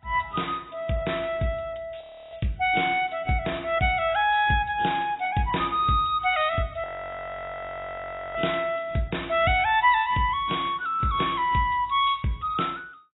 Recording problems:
lossy compression; AAC, log-spectral distance 5 dB, nothing above 3.4 kHz
audio freezing; at 2 s and at 7 s for 1.5 s

